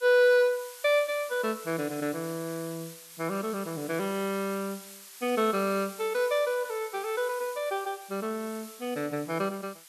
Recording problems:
hiss; SNR 16 dB

